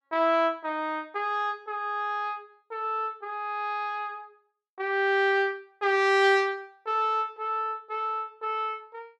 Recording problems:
none

